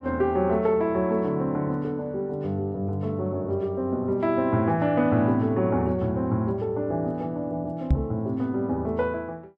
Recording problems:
microphone thump; at 8 s; peak +7 dB vs average level

